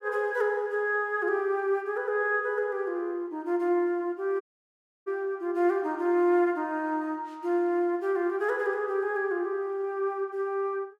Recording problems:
audio cutting out; at 4.5 s for 0.5 s

